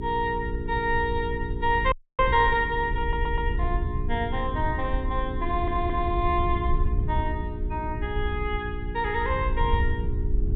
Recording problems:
treble missing; nothing above 4 kHz
hum; 60 Hz, harmonics up to 420 Hz, SNR 10 dB
wind on the microphone; below 74 Hz, SNR 4 dB
frozen audio; at 2 s
audio stuttering; at 3 s and at 5.5 s

